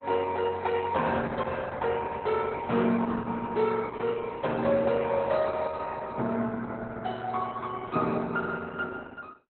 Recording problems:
codec artefacts; Opus, log-spectral distance 3 dB, nothing above 4 kHz

